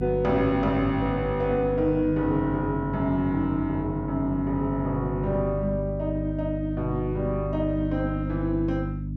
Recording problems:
hum; 50 Hz, harmonics up to 300 Hz, SNR 5 dB

